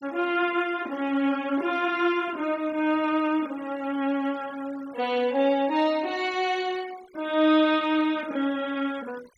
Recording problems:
noise reduction artefacts; signal-to-artefact ratio 22 dB

